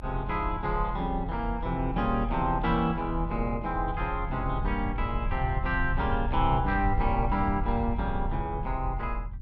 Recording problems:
low-frequency rumble; below 74 Hz, strongest tone 40 Hz, SNR 5 dB

